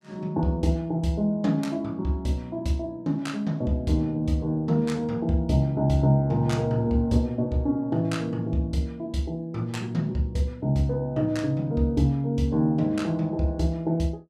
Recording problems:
none

